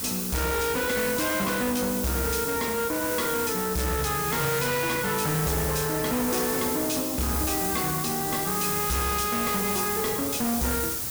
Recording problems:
distorted audio; hard clipping, signal-to-distortion ratio 6 dB
hiss; SNR 1 dB

